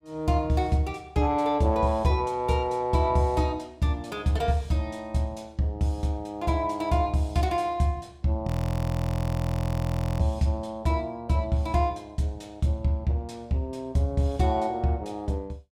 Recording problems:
frozen audio; at 8.5 s for 1.5 s

